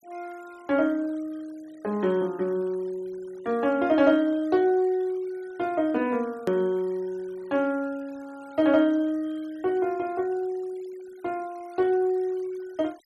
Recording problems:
denoising artefacts; signal-to-artefact ratio 27 dB
click at an edit; at 6.5 s

